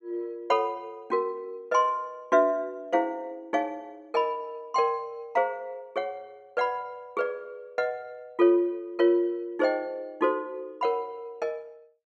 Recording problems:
none

